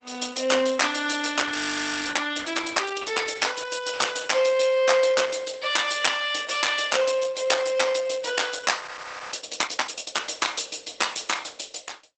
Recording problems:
lossy codec; Opus, log-spectral distance 8 dB, nothing above 8 kHz
audio freezing; at 1.5 s for 0.5 s and at 9 s for 0.5 s

